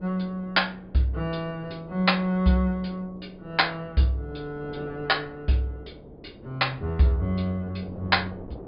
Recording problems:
low-pass filter; nothing above 5 kHz
wind noise; below 490 Hz, SNR 20 dB

